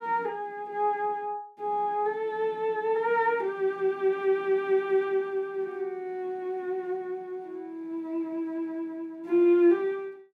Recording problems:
none

